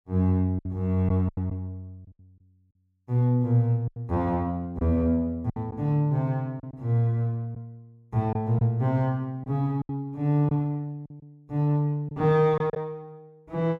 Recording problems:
lost packets; 6% of the sound replaced, filled with silence

